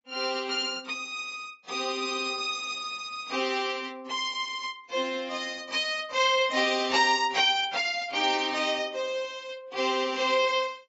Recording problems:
codec artefacts; AAC, then AAC, log-spectral distance 4 dB, nothing above 7.6 kHz

